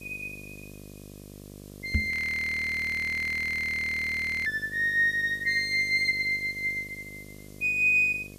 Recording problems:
electrical hum; 50 Hz, harmonics up to 1.1 kHz, SNR 22 dB
hiss; SNR 27 dB
knock on the microphone; at 2 s; peak +2 dB vs average level
audio freezing; at 2 s for 2.5 s

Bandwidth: 14.5 kHz